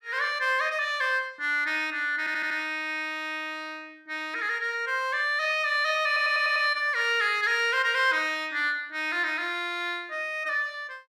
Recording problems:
audio stuttering; at 2 s and at 6 s

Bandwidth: 14.5 kHz